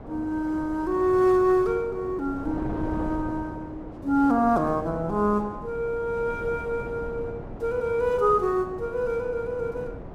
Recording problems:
wind noise; below 500 Hz, SNR 12 dB

